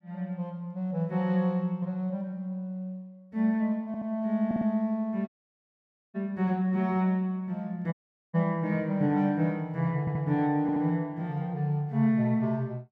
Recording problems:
audio stuttering; 4 times, first at 4 s
dropout; at 5.5 s for 1 s and at 8 s

